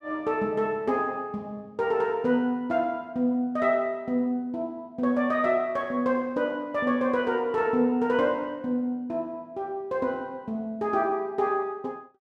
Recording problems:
none

